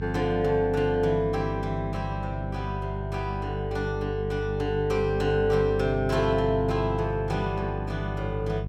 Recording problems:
hum; 50 Hz, harmonics up to 400 Hz, SNR 5 dB

